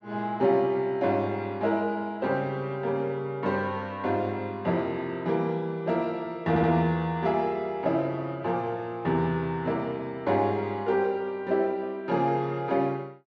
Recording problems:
stutter; at 6.5 s

